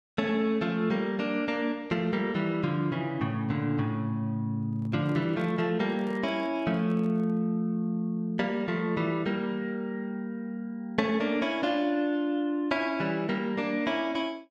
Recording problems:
handling noise; from 4.5 to 7.5 s; peak -12 dB vs average level

